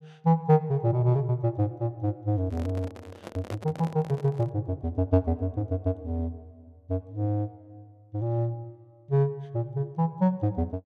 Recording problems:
handling noise; from 2.5 to 4.5 s; peak -6 dB vs average level

